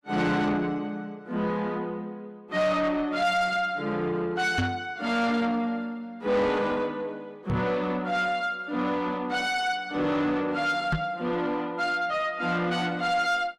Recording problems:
distorted audio; soft clipping, signal-to-distortion ratio 10 dB
microphone thump; at 4.5 s, at 7.5 s and at 11 s; peak +4 dB vs average level

